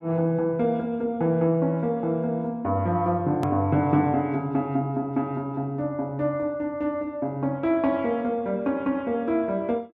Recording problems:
edit click; at 3.5 s

